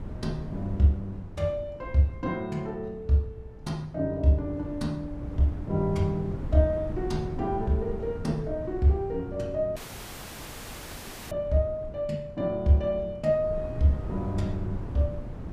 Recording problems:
wind on the microphone; below 200 Hz, SNR 11 dB
dropout; at 10 s for 1.5 s

